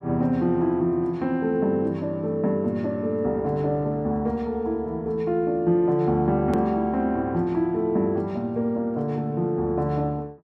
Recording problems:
click at an edit; at 6.5 s

